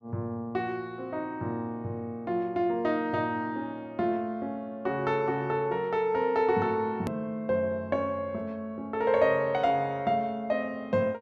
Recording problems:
edit click; at 7 s

